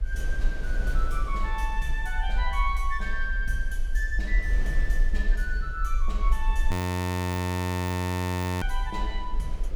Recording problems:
low-frequency rumble; below 52 Hz, SNR -4 dB
wind noise; below 580 Hz, SNR 11 dB
audio freezing; at 6.5 s for 2 s

